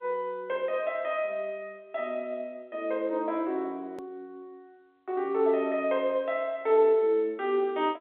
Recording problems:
phone line; 240 Hz to 3.8 kHz, G.711
hard cut with a click; at 4 s

